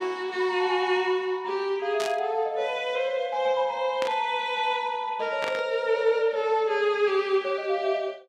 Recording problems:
burst of static; at 2 s, at 4 s and at 5.5 s; peak -3 dB vs average level

